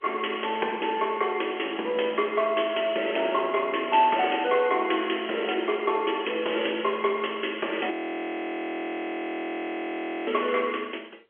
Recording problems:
phone line; 260 Hz to 3.2 kHz, G.711
frozen audio; at 8 s for 2.5 s

